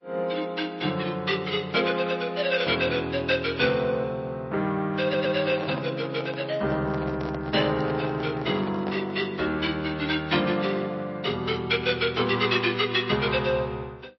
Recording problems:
lossy compression; MP3, log-spectral distance 3 dB, nothing above 5.3 kHz
audio stuttering; at 5 s
microphone handling noise; from 5 to 9.5 s; peak -5 dB vs average level

